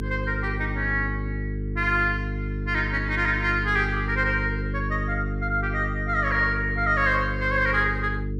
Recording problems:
electrical hum; 50 Hz, harmonics up to 450 Hz, SNR 5 dB

